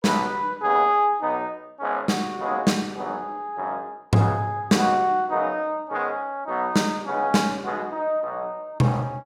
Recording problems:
none

